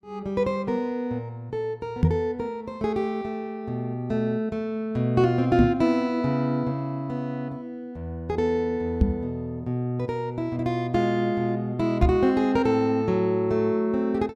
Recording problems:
microphone bump; 4 times, first at 2 s; peak +9 dB vs average level

